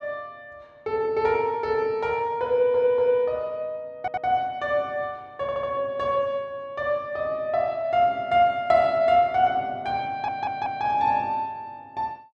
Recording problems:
audio stuttering; 4 times, first at 2.5 s

